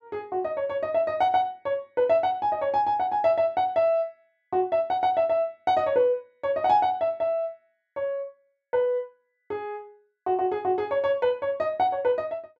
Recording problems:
none

